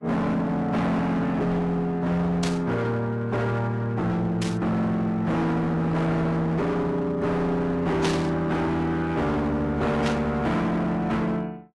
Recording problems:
codec artefacts; AAC, log-spectral distance 2 dB, nothing above 11.3 kHz
distortion; hard clipping, signal-to-distortion ratio 7 dB
static burst; 4 times, first at 2.5 s; peak -1 dB vs average level

